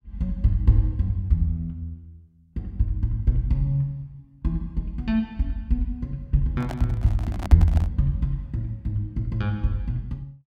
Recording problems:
handling noise; from 6.5 to 8 s; peak -5 dB vs average level

